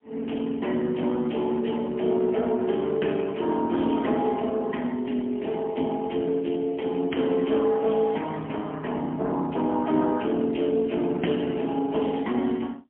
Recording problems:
phone line; 170 Hz to 3.2 kHz, AMR-NB, then MP3

